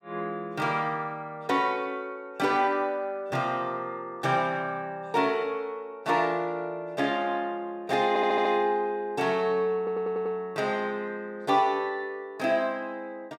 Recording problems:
audio stuttering; at 8 s and at 10 s

